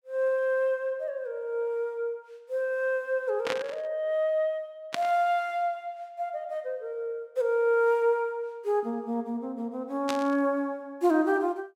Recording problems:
burst of static; at 3.5 s, at 5 s and at 10 s; peak +2 dB vs average level

